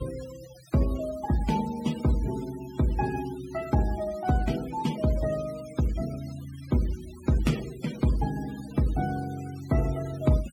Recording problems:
noise reduction artefacts; signal-to-artefact ratio 18 dB

